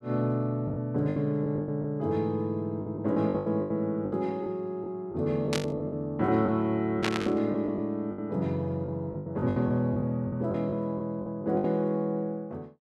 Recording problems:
lost packets; 12% of the sound replaced, filled with the last packet
burst of static; at 5.5 s and at 7 s; peak +4 dB vs average level

